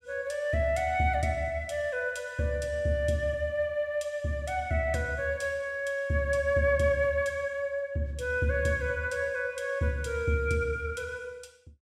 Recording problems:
none

